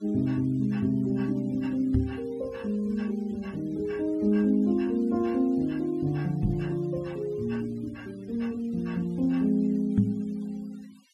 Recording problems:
denoising artefacts; signal-to-artefact ratio 27 dB
microphone thump; at 2 s, at 6.5 s and at 10 s; peak +7 dB vs average level

